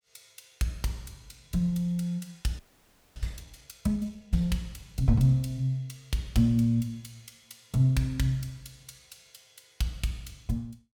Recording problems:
audio freezing; at 2.5 s for 0.5 s

